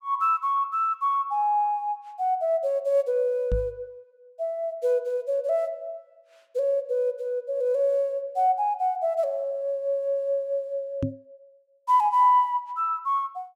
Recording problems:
microphone thump; at 3.5 s and at 11 s; peak +2 dB vs average level

